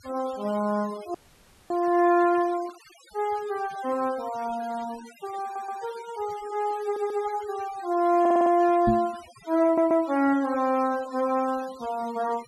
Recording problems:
denoising artefacts; signal-to-artefact ratio 21 dB
frozen audio; at 1 s for 0.5 s
stutter; 4 times, first at 5.5 s
microphone thump; at 9 s; peak +4 dB vs average level

